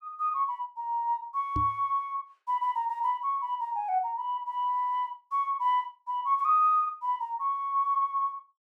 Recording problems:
microphone bump; at 1.5 s; peak -1 dB vs average level

